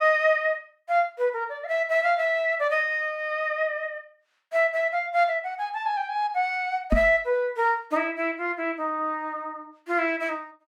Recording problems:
microphone thump; at 7 s; peak +5 dB vs average level

